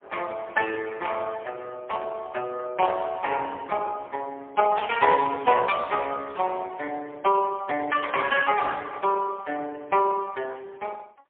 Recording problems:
phone line; 300 Hz to 3.4 kHz, AMR-NB, then MP3

